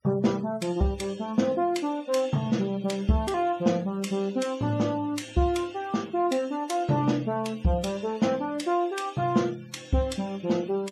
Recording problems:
denoising artefacts; signal-to-artefact ratio 23 dB

